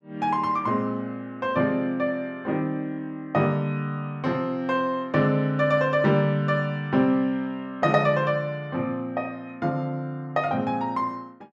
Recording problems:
none

